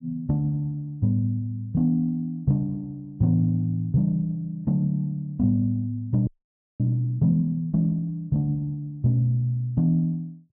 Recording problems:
audio freezing; at 6.5 s for 0.5 s

